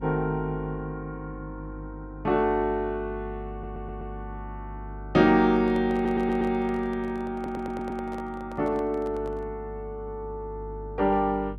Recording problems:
hum; 50 Hz, harmonics up to 350 Hz, SNR 15 dB
audio stuttering; at 3.5 s, at 6 s and at 7.5 s
microphone handling noise; from 5.5 to 9.5 s; peak -11 dB vs average level

